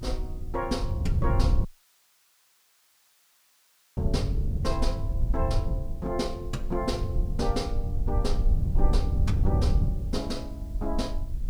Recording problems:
background hiss; slope +2 dB per octave, SNR 26 dB
rumble; below 46 Hz, strongest tone 22 Hz, SNR 2 dB
wind on the microphone; below 110 Hz, SNR -3 dB
audio cutting out; at 1.5 s for 2.5 s

